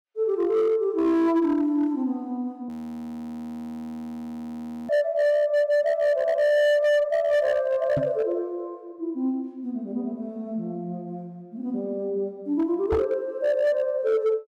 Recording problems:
distortion; hard clipping, signal-to-distortion ratio 12 dB
frozen audio; at 2.5 s for 2 s
knock on the microphone; at 8 s and at 13 s; peak 0 dB vs average level

